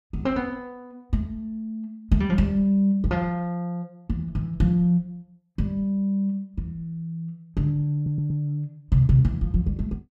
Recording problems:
stutter; at 8 s

